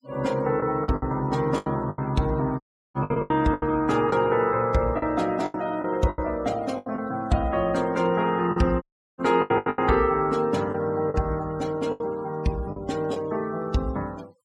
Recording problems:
denoising artefacts; signal-to-artefact ratio 23 dB
packet loss; 10% of the sound replaced, filled with the last packet
dropout; at 2.5 s and at 9 s

